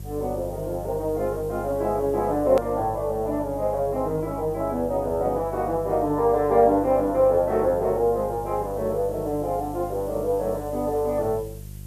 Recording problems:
mains hum; 50 Hz, harmonics up to 400 Hz, SNR 15 dB
background hiss; slope +2 dB per octave, SNR 26 dB
hard cut with a click; at 2.5 s

